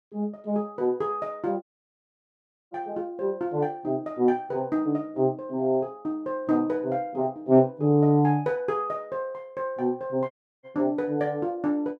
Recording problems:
dropout; at 1.5 s for 1 s and at 10 s

